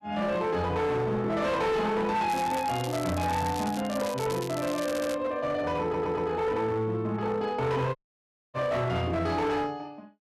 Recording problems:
distortion; hard clipping, signal-to-distortion ratio 10 dB
crackle; from 2.5 to 5 s; loose cable, SNR 13 dB
stutter; at 5 s and at 6 s
audio cutting out; at 8 s for 0.5 s

